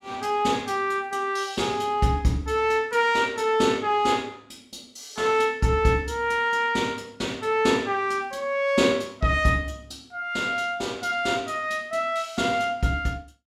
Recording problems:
none

